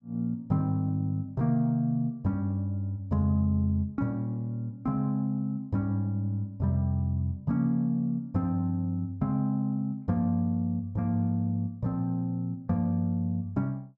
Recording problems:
none

